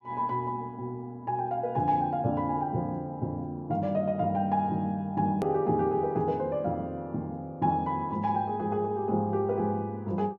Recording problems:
low-pass filter; nothing above 8 kHz
hard cut with a click; at 5.5 s

